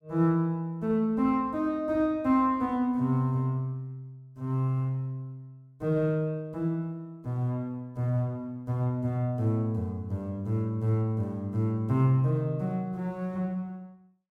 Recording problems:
none

